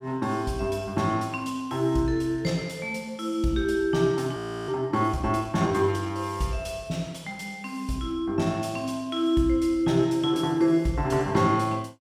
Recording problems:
frozen audio; at 4.5 s

